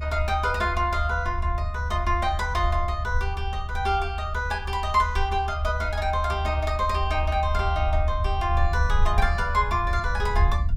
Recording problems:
low-frequency rumble; below 76 Hz, SNR 2 dB

